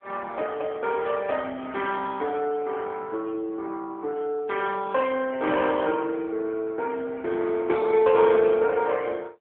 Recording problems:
phone line; 280 Hz to 3.3 kHz, AMR-NB

